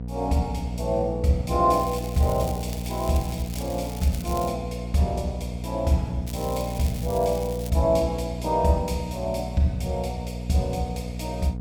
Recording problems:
hum; 60 Hz, harmonics up to 720 Hz, SNR 7 dB
crackle; from 1.5 to 4.5 s and from 6.5 to 7.5 s; loose cable, SNR 15 dB

